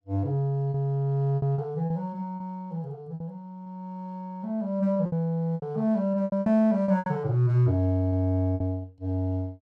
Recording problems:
packet loss; 9% of the sound replaced, filled with repeated pitch periods

